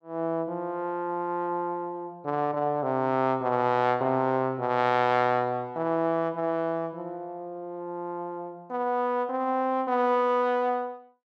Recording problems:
none

